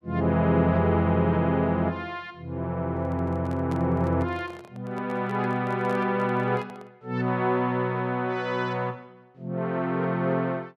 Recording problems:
handling noise; from 3 to 7 s; peak -9 dB vs average level

